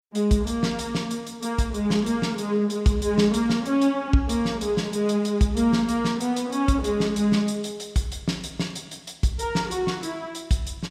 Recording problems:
none

